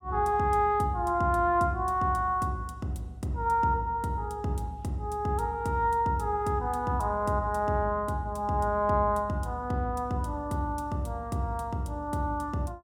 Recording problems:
none

